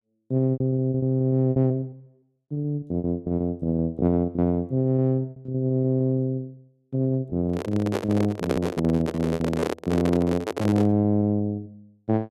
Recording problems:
lost packets; 16% of the sound replaced, filled with repeated pitch periods
handling noise; from 7.5 to 11 s; peak +3 dB vs average level

